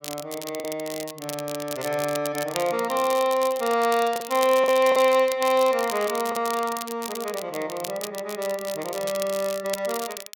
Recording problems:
crackling; vinyl, SNR 11 dB
packet loss; 2% of the sound replaced, filled with the last packet

